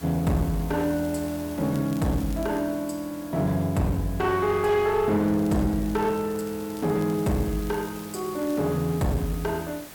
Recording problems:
distortion; hard clipping, uneven, signal-to-distortion ratio 10 dB
background hiss; slope -3 dB per octave, SNR 17 dB
crackling; from 1 to 2.5 s and from 5.5 to 8.5 s; loose cable, SNR 25 dB

